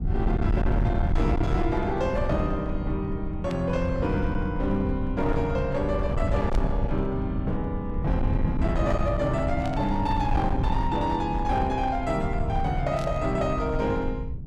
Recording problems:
distorted audio; hard clipping, uneven, signal-to-distortion ratio 10 dB
low-frequency rumble; below 110 Hz, SNR 2 dB
static burst; 4 times, first at 3.5 s; peak -10 dB vs average level

